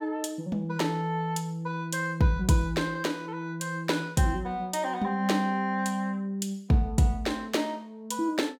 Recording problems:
none

